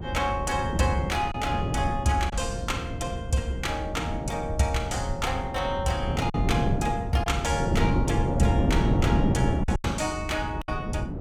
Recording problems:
rumble; below 100 Hz, SNR 7 dB
wind noise; below 300 Hz, SNR 1 dB
packet loss; 3% of the sound replaced, filled with silence

